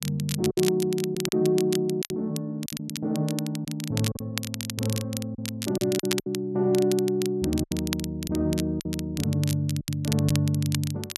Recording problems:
crackle; vinyl, SNR 9 dB
packet loss; 7% of the sound replaced, filled with silence

